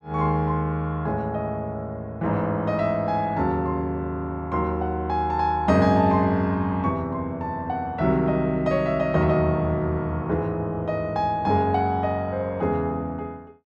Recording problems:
none

